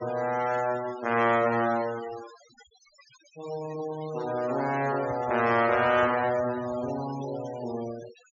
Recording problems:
treble cut off; nothing above 7 kHz
noise reduction artefacts; signal-to-artefact ratio 17 dB
handling noise; from 5 to 7 s; peak -10 dB vs average level

